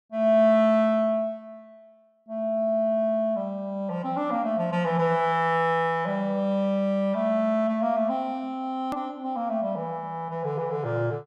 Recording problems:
edit click; at 9 s

